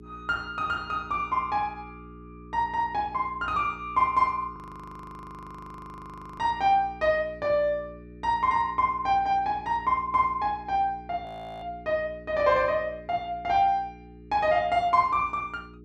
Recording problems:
electrical hum; 60 Hz, harmonics up to 420 Hz, SNR 20 dB
frozen audio; at 4.5 s for 2 s and at 11 s

